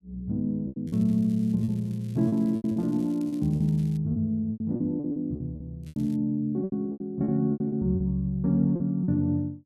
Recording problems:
packet loss; 13% of the sound replaced, filled with repeated pitch periods
crackling; from 1 to 4 s and at 6 s; loose cable, SNR 29 dB

